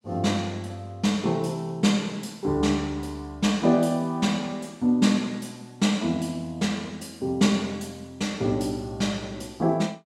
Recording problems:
none

